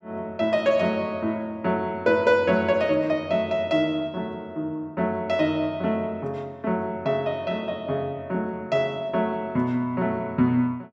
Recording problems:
none

